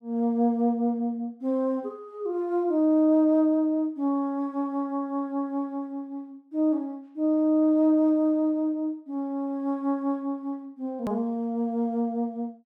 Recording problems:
hard cut with a click; at 11 s

